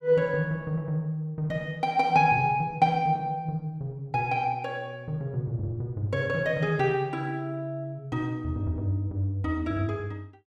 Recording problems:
none

